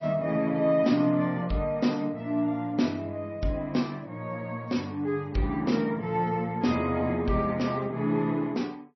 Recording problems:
lossy compression; MP3, log-spectral distance 2 dB, nothing above 5.8 kHz

